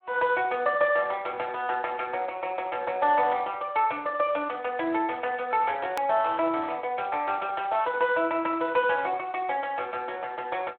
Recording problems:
phone line; 300 Hz to 3.3 kHz, Speex
click at an edit; at 6 s

